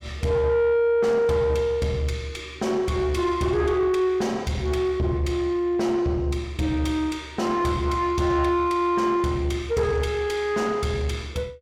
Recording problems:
distortion; soft clipping, signal-to-distortion ratio 11 dB

